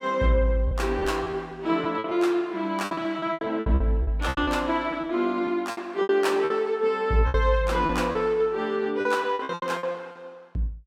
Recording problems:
lost packets; 13% of the sound replaced, filled with repeated pitch periods

